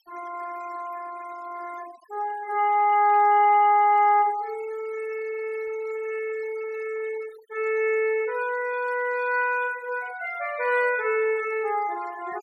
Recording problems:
noise reduction artefacts; signal-to-artefact ratio 21 dB

